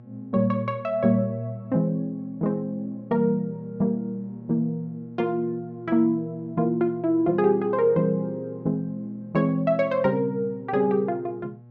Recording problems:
electrical hum; 60 Hz, harmonics up to 840 Hz, SNR 21 dB

